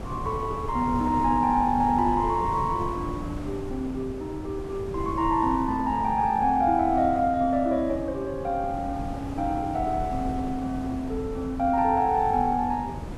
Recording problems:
wind on the microphone; below 340 Hz, SNR 10 dB

